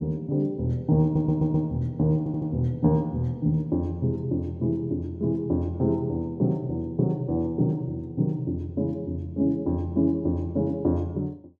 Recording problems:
stutter; at 1 s and at 2 s

